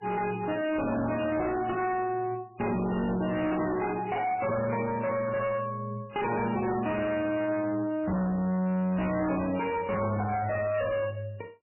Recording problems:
lossy codec; MP3, log-spectral distance 4 dB, nothing above 2.6 kHz
distorted audio; hard clipping, signal-to-distortion ratio 7 dB

